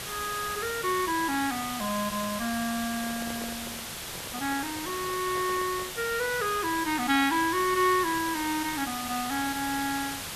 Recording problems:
background hiss; slope 0 dB per octave, SNR 6 dB
handling noise; from 3 to 6 s; peak -10 dB vs average level

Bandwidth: 14 kHz